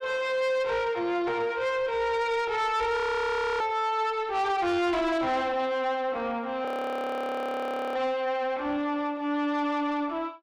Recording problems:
distorted audio; soft clipping, signal-to-distortion ratio 10 dB
audio freezing; at 3 s for 0.5 s and at 6.5 s for 1.5 s

